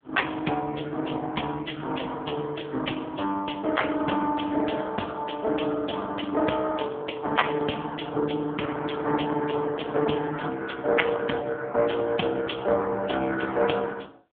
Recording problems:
telephone audio; 220 Hz to 3.4 kHz, AMR-NB

